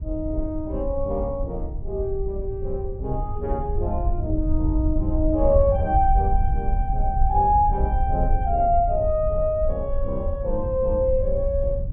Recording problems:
treble missing; nothing above 3.3 kHz
rumble; below 70 Hz, SNR 3 dB

